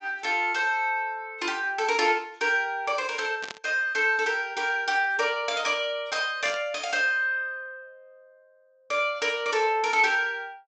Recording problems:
treble cut off; nothing above 8 kHz
static burst; at 3.5 s and at 6.5 s; peak -7 dB vs average level

